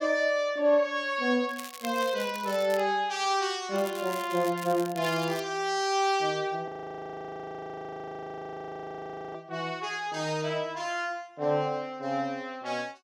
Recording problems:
crackling; from 1.5 to 3 s and from 4 to 5.5 s; loose cable, SNR 14 dB
audio freezing; at 6.5 s for 2.5 s

